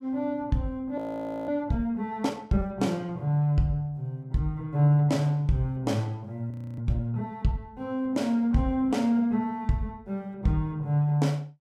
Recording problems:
frozen audio; at 1 s for 0.5 s and at 6.5 s

